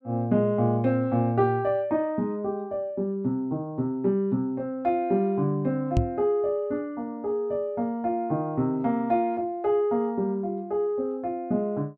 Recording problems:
microphone bump; at 6 s; peak +6 dB vs average level

